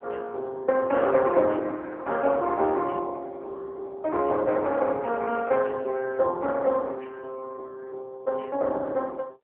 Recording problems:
telephone audio; 340 Hz to 2.8 kHz, AMR-NB

